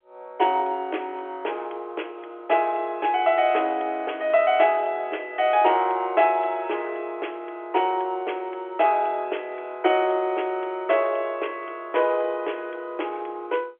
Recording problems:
telephone audio; 280 Hz to 3.4 kHz, G.711

